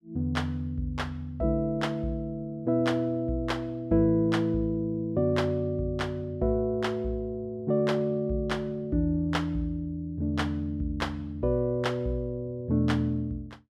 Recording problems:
none

